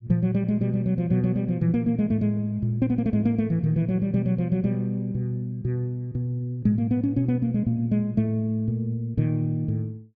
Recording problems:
none

